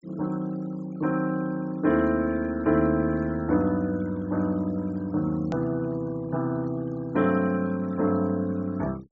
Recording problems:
treble missing; nothing above 8 kHz
denoising artefacts; signal-to-artefact ratio 24 dB
edit click; at 5.5 s

